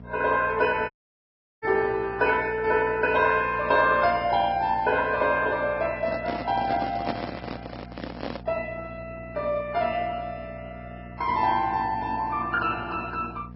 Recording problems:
codec artefacts; Vorbis, then MP2, log-spectral distance 3 dB, nothing above 5.2 kHz
electrical hum; 60 Hz, harmonics up to 960 Hz, SNR 18 dB
dropout; at 1 s for 0.5 s
handling noise; from 6 to 8.5 s; peak 0 dB vs average level

